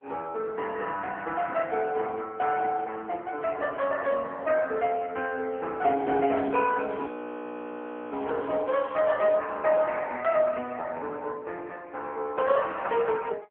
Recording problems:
telephone audio; 280 Hz to 3.4 kHz, AMR-NB
crackle; from 6 to 9.5 s; loose cable, SNR 26 dB
audio freezing; at 7 s for 1 s

